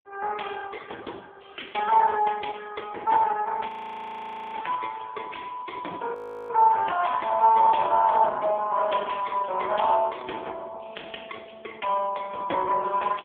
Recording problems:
telephone audio; 280 Hz to 3.4 kHz, AMR-NB
audio freezing; at 3.5 s for 1 s and at 6 s

